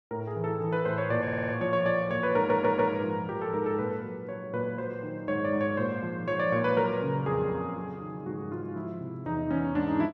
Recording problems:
stutter; at 1 s and at 2.5 s

